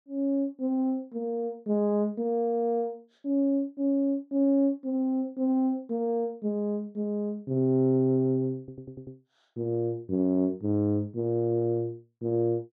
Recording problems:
stutter; at 8.5 s

